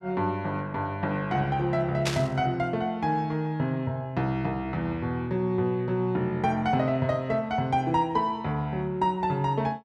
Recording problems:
static burst; at 2 s; peak +3 dB vs average level

